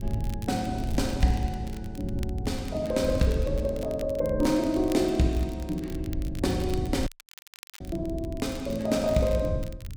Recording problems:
wind noise; below 100 Hz, SNR 8 dB
crackle; vinyl, SNR 20 dB
audio cutting out; at 7 s for 0.5 s

